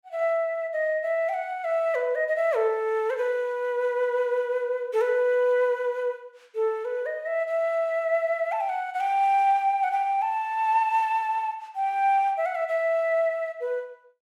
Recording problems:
none

